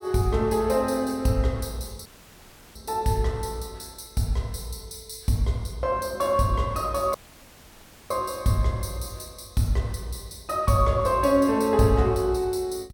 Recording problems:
dropout; at 2 s for 0.5 s and at 7 s for 1 s

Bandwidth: 17.5 kHz